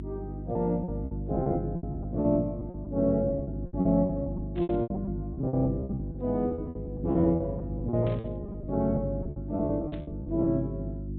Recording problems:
low-pass filter; nothing above 4 kHz
hum; 50 Hz, harmonics up to 350 Hz, SNR 7 dB
lost packets; 16% of the sound replaced, filled with repeated pitch periods
burst of static; at 4.5 s, at 8 s and at 10 s; peak -13 dB vs average level

